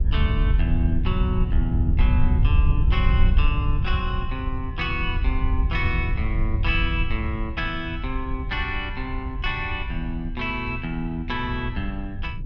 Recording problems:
wind noise; below 80 Hz, SNR -3 dB

